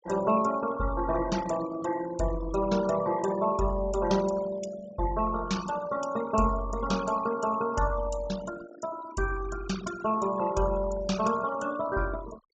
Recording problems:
treble cut off; nothing above 8 kHz
denoising artefacts; signal-to-artefact ratio 14 dB

